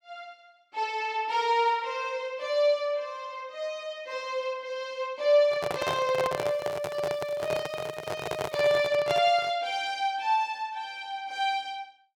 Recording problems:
handling noise; from 5.5 to 9.5 s; peak +1 dB vs average level
crackling; from 6.5 to 9 s; loose cable, SNR 28 dB

